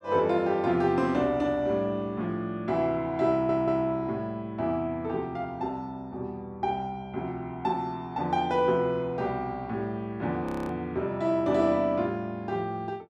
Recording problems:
stutter; at 3.5 s
audio freezing; at 10 s

